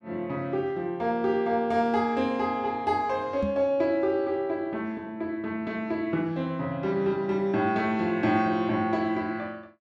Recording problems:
microphone thump; at 3.5 s; peak 0 dB vs average level

